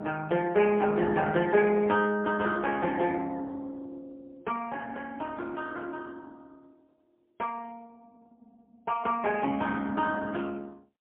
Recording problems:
phone line; 240 Hz to 3.4 kHz, AMR-NB, then MP3

